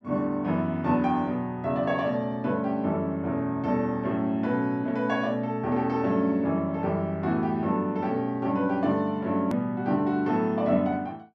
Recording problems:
hard cut with a click; at 9.5 s

